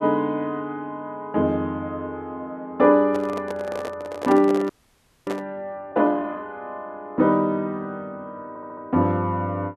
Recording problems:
microphone handling noise; from 3 to 5.5 s; peak -2 dB vs average level
audio freezing; at 4.5 s for 0.5 s
stutter; at 8.5 s

